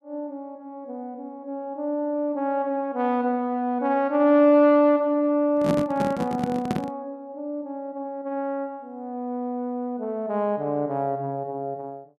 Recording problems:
microphone handling noise; from 5.5 to 7 s; peak +3 dB vs average level

